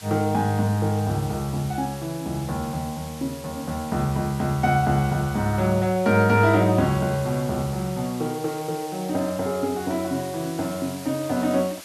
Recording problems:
hiss; slope +2 dB per octave, SNR 16 dB

